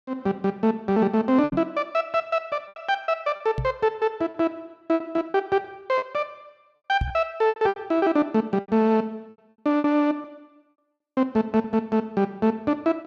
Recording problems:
lost packets; 8% of the sound replaced, filled with repeated pitch periods
microphone thump; at 1.5 s, at 3.5 s and at 7 s; peak +1 dB vs average level

